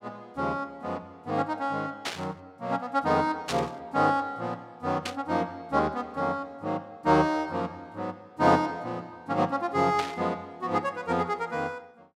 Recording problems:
burst of static; 4 times, first at 2 s; peak +1 dB vs average level

